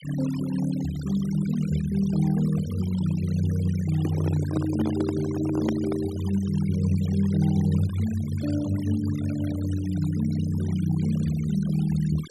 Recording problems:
noise reduction artefacts; signal-to-artefact ratio 18 dB
handling noise; from 4 to 6 s; peak +1 dB vs average level

